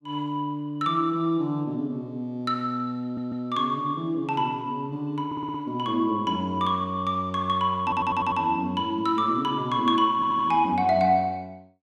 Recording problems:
stutter; 4 times, first at 3 s

